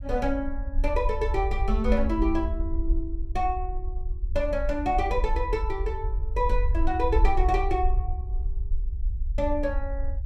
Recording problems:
low-frequency rumble; below 56 Hz, SNR 1 dB

